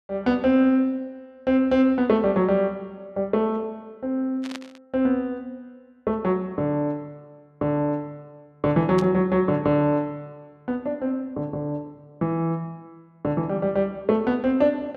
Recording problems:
burst of static; at 4.5 s and at 9 s; peak -8 dB vs average level

